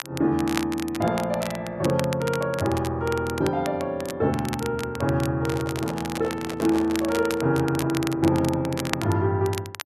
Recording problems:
crackling; vinyl, SNR 12 dB
handling noise; from 5.5 to 7.5 s; peak -5 dB vs average level

